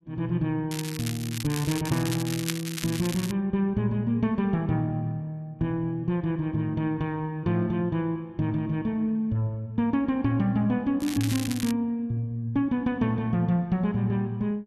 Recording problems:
crackling; from 0.5 to 3.5 s and at 11 s; loose cable, SNR 9 dB

